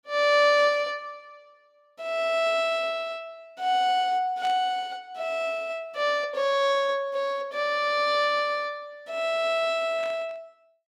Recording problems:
burst of static; at 4.5 s and at 10 s; peak -12 dB vs average level

